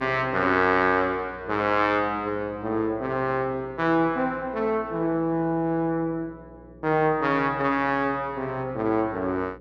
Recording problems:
electrical hum; 60 Hz, harmonics up to 540 Hz, SNR 23 dB

